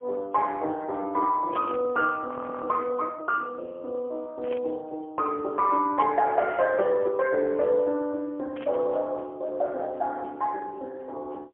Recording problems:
phone line; 320 Hz to 2.1 kHz, AMR-NB, then MP3
static burst; 4 times, first at 1.5 s; peak -9 dB vs average level
audio freezing; at 2.5 s

